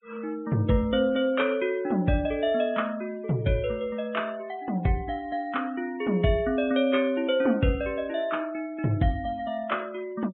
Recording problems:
treble cut off; nothing above 3.5 kHz
denoising artefacts; signal-to-artefact ratio 25 dB

